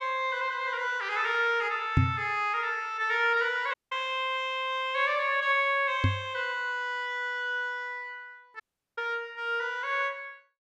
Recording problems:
microphone bump; at 2 s and at 6 s; peak +8 dB vs average level
audio cutting out; at 3.5 s and at 8.5 s

